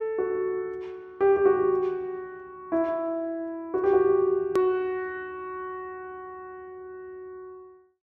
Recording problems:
hard cut with a click; at 4.5 s

